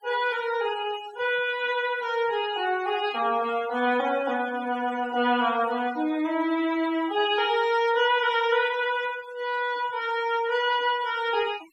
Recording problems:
denoising artefacts; signal-to-artefact ratio 18 dB

